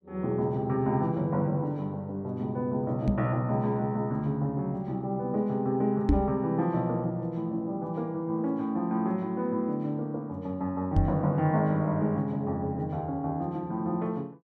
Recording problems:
microphone thump; at 3 s, at 6 s and at 11 s; peak +9 dB vs average level

